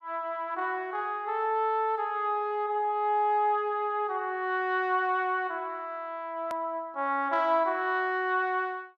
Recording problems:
hard cut with a click; at 6.5 s

